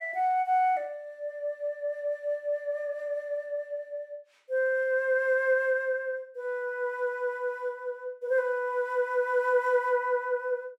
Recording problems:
none

